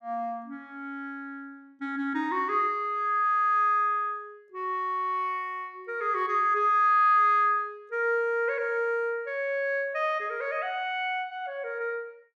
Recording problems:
none

